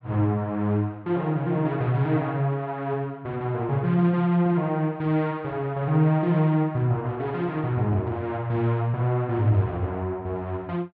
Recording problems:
none

